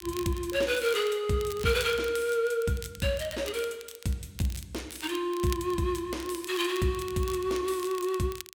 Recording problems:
crackling; vinyl, SNR 15 dB

